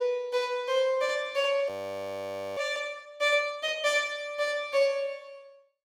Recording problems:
audio freezing; at 1.5 s for 1 s

